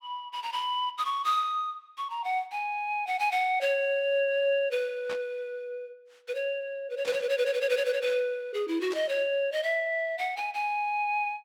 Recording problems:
static burst; at 5 s, at 7 s and at 9 s; peak -7 dB vs average level

